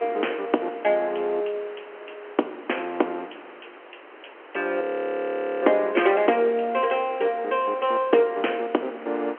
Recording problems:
phone line; 280 Hz to 3.2 kHz, G.711
background hiss; SNR 20 dB
frozen audio; at 5 s for 1 s

